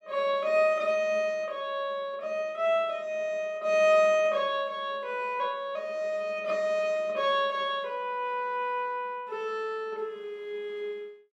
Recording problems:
none

